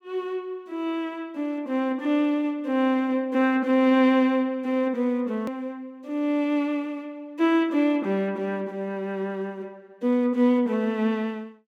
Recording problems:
edit click; at 5.5 s

